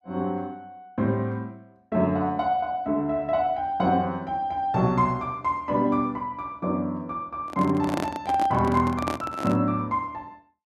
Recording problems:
handling noise; from 7.5 to 9.5 s; peak +1 dB vs average level

